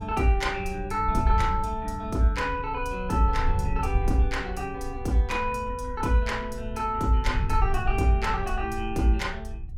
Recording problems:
wind noise; below 74 Hz, SNR 6 dB

